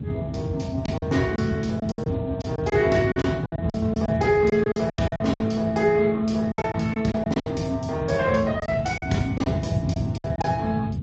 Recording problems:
lossy compression; Speex, then Opus, log-spectral distance 3 dB
low-frequency rumble; below 180 Hz, SNR 6 dB
lost packets; 11% of the sound replaced, filled with silence

